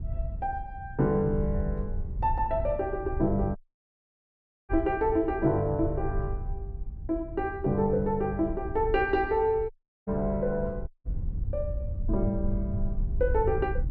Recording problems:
wind on the microphone; below 80 Hz, SNR 7 dB
dropout; at 3.5 s for 1 s, at 9.5 s and at 11 s

